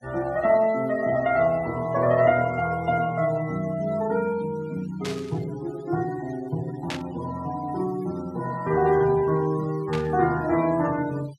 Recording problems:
denoising artefacts; signal-to-artefact ratio 19 dB
burst of static; at 5 s, at 7 s and at 10 s; peak -3 dB vs average level

